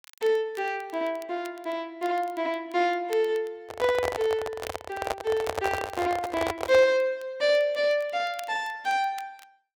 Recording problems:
crackle; vinyl, SNR 24 dB
handling noise; from 3.5 to 7 s; peak +2 dB vs average level

